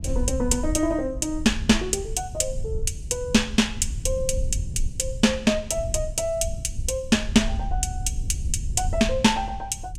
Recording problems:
rumble; below 76 Hz, SNR 8 dB

